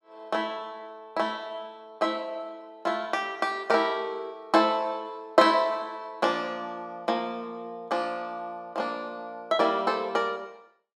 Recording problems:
none

